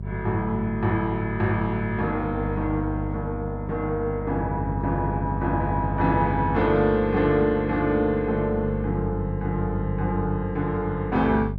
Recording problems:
hum; 50 Hz, harmonics up to 450 Hz, SNR 6 dB

